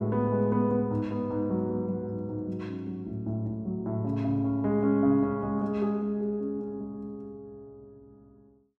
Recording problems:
none

